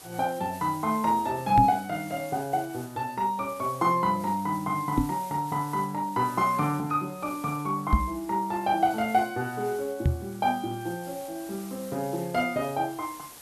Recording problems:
hiss; slope -2 dB per octave, SNR 18 dB
microphone bump; 4 times, first at 1.5 s; peak +9 dB vs average level

